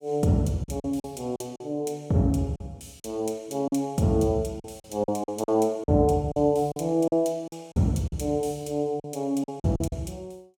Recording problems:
lost packets; 9% of the sound replaced, filled with silence

